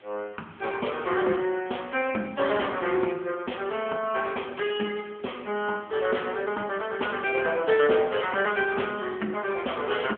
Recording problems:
telephone audio; 260 Hz to 3.3 kHz, AMR-NB
background hiss; SNR 26 dB

